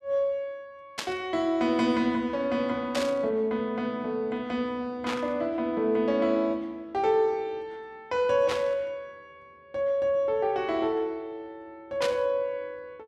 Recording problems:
static burst; 5 times, first at 1 s; peak 0 dB vs average level

